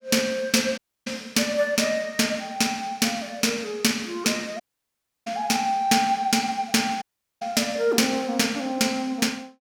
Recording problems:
dropout; at 1 s, at 4.5 s for 0.5 s and at 7 s

